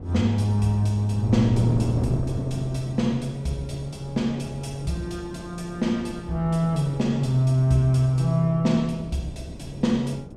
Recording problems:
wind noise; below 330 Hz, SNR 11 dB

